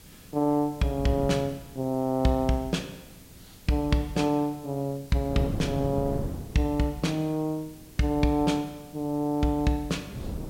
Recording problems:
background hiss; slope +1 dB per octave, SNR 24 dB
wind on the microphone; below 270 Hz, SNR 9 dB

